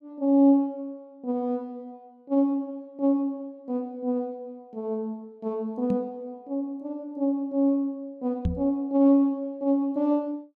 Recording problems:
knock on the microphone; at 6 s and at 8.5 s; peak +3 dB vs average level

